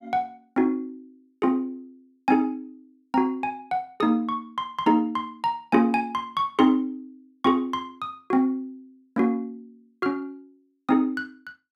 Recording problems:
none

